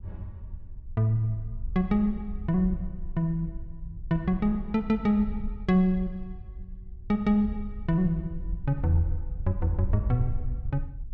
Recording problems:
wind noise; below 62 Hz, SNR 10 dB

